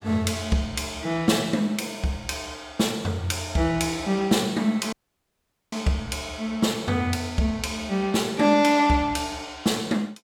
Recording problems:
audio cutting out; at 5 s for 1 s

